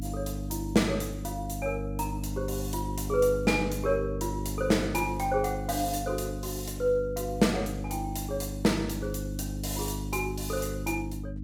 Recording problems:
hum; 50 Hz, harmonics up to 300 Hz, SNR 5 dB

